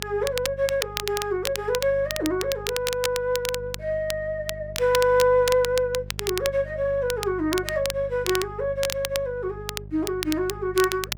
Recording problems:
mains hum; 50 Hz, harmonics up to 550 Hz, SNR 16 dB
crackling; vinyl, SNR 7 dB

